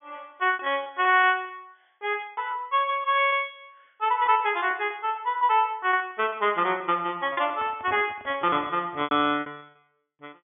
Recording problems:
low-pass filter; nothing above 3.4 kHz
lost packets; 12% of the sound replaced, filled with repeated pitch periods
handling noise; from 7.5 to 9.5 s; peak -11 dB vs average level

